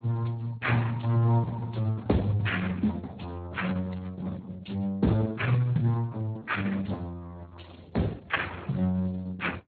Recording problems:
lossy codec; Opus, then Speex, log-spectral distance 5 dB, nothing above 4.2 kHz

